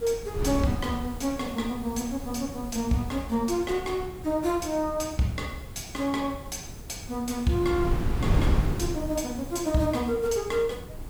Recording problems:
background hiss; SNR 21 dB
wind on the microphone; below 190 Hz, SNR 6 dB

